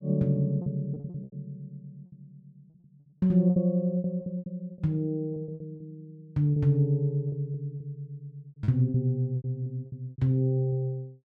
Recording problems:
lost packets; 13% of the sound replaced, filled with repeated pitch periods

